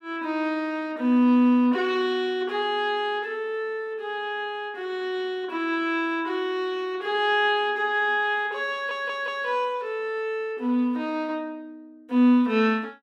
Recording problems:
audio stuttering; at 8.5 s

